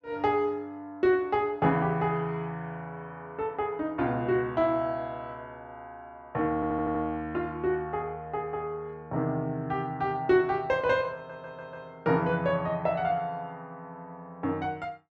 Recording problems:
audio stuttering; at 6.5 s and at 11 s

